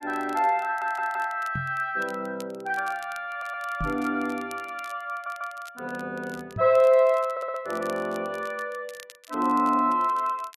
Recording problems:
crackling; vinyl, SNR 24 dB
stutter; 4 times, first at 0.5 s
microphone bump; at 1.5 s, at 4 s and at 6.5 s; peak -3 dB vs average level

